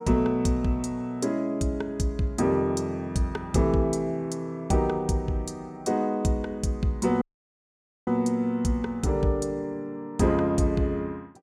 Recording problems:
audio cutting out; at 7 s for 1 s

